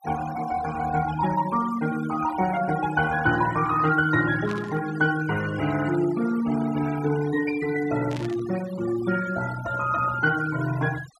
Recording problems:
noise reduction artefacts; signal-to-artefact ratio 12 dB
burst of static; at 4.5 s and at 8 s; peak -10 dB vs average level

